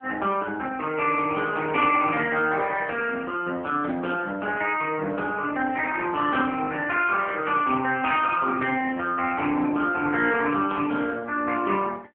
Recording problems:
phone line; 220 Hz to 3.3 kHz, AMR-NB

